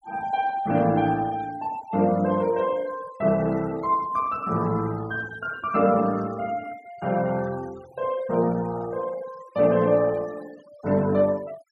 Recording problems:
noise reduction artefacts; signal-to-artefact ratio 22 dB

